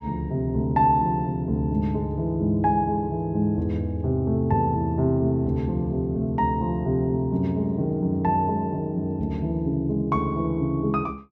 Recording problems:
none

